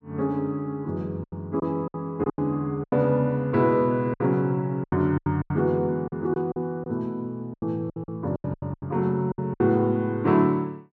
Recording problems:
packet loss; 12% of the sound replaced, filled with silence

